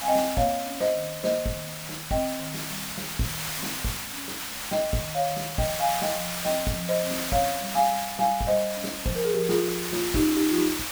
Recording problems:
hiss; SNR 4 dB

